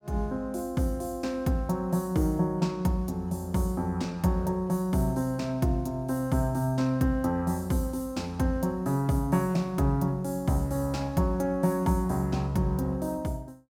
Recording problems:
none

